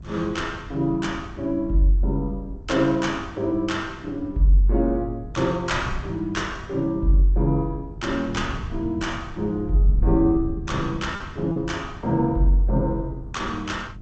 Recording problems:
lossy compression; AAC, then G.722, log-spectral distance 2 dB, nothing above 16 kHz
electrical hum; 50 Hz, harmonics up to 1.1 kHz, SNR 24 dB
wind noise; below 120 Hz, SNR 14 dB
packet loss; 0.6% of the sound replaced, filled with repeated pitch periods

